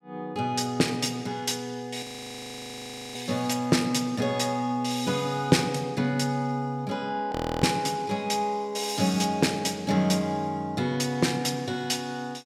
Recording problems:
frozen audio; at 2 s for 1 s and at 7.5 s

